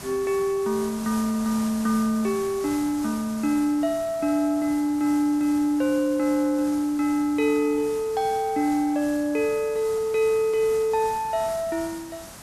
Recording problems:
background hiss; slope -2 dB per octave, SNR 16 dB

